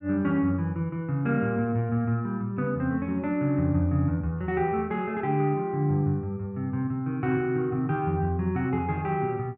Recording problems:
none

